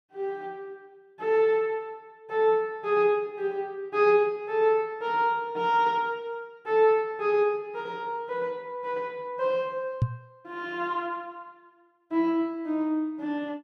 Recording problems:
knock on the microphone; at 10 s; peak +6 dB vs average level

